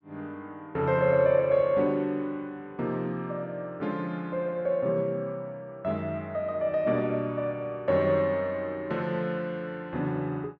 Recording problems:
none

